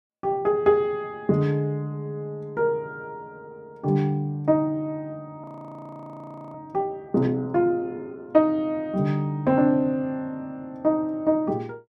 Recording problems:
audio freezing; at 5.5 s for 1 s

